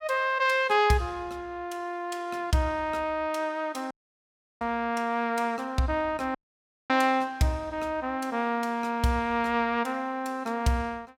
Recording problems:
dropout; at 4 s for 0.5 s and at 6.5 s for 0.5 s

